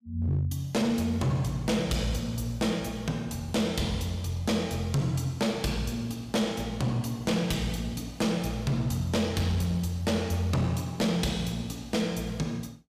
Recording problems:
distortion; hard clipping, uneven, signal-to-distortion ratio 12 dB

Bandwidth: 15 kHz